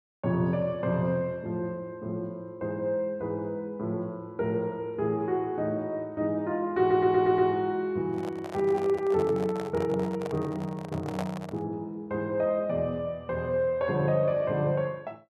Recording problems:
audio stuttering; at 7 s
microphone handling noise; from 8 to 12 s; peak -2 dB vs average level

